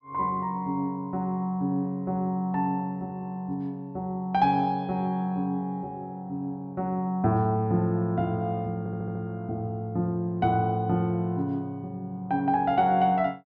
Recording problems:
stutter; at 9 s

